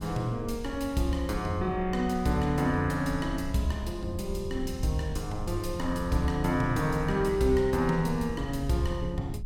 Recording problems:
wind on the microphone; below 86 Hz, SNR 11 dB

